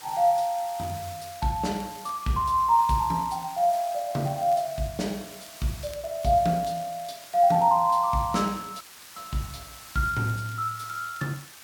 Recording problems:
hiss; slope +1 dB per octave, SNR 17 dB
crackling; vinyl, SNR 28 dB
dropout; at 9 s

